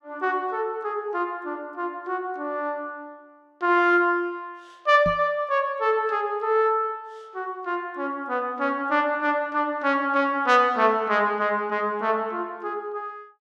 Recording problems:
microphone thump; at 5 s; peak -3 dB vs average level

